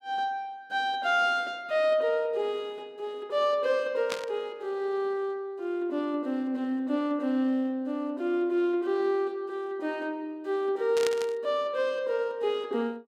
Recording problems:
burst of static; at 4 s and at 11 s; peak 0 dB vs average level

